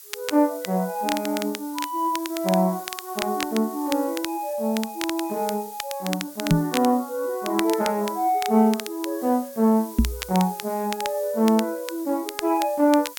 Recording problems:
background hiss; SNR 16 dB
crackle; vinyl, SNR 11 dB
microphone thump; at 6.5 s and at 10 s; peak +9 dB vs average level

